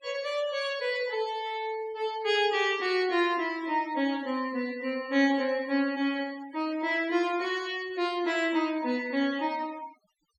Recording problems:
noise reduction artefacts; signal-to-artefact ratio 19 dB

